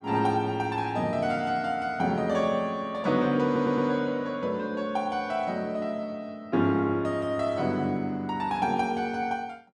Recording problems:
audio stuttering; at 3.5 s

